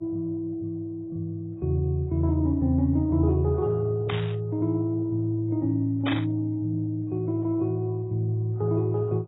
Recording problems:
codec artefacts; MP2, then AAC, log-spectral distance 2 dB
burst of static; at 4 s and at 6 s; peak 0 dB vs average level

